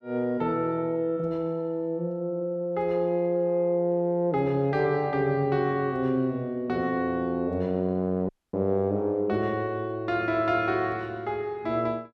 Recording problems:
audio cutting out; at 8.5 s

